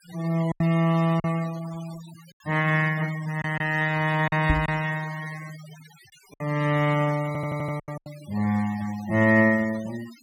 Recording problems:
noise reduction artefacts; signal-to-artefact ratio 19 dB
lost packets; 5% of the sound replaced, filled with silence
knock on the microphone; at 4.5 s; peak +4 dB vs average level
audio stuttering; at 7.5 s

